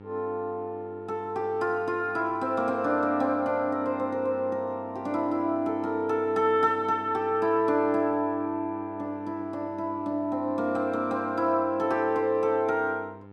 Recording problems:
electrical hum; 50 Hz, harmonics up to 1.4 kHz, SNR 19 dB

